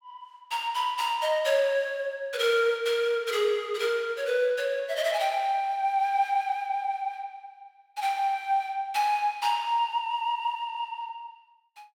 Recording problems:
none

